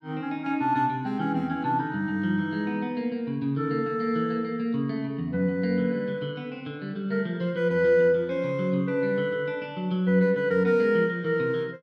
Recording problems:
none

